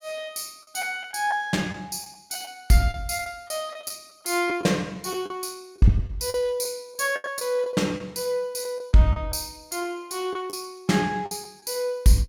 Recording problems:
lost packets; 7% of the sound replaced, filled with the last packet

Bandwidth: 17 kHz